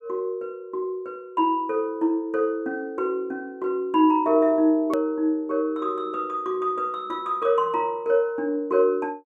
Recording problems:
hard cut with a click; at 5 s

